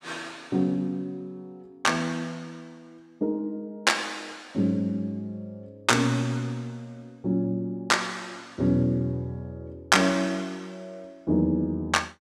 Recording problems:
none

